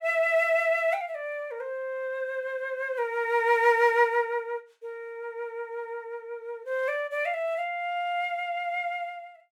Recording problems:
none

